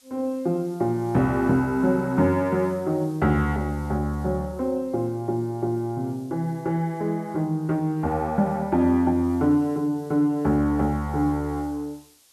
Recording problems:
background hiss; slope +1 dB per octave, SNR 29 dB

